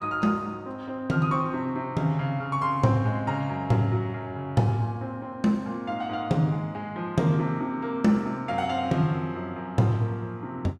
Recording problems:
none

